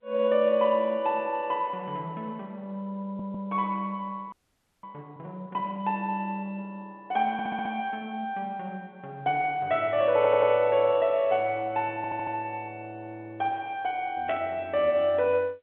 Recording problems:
telephone audio; 190 Hz to 3.6 kHz, G.711
audio stuttering; 4 times, first at 3 s
audio freezing; at 4.5 s for 0.5 s
burst of static; at 14 s; peak -8 dB vs average level

